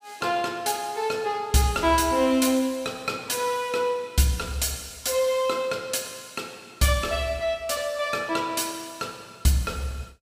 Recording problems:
none

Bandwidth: 15.5 kHz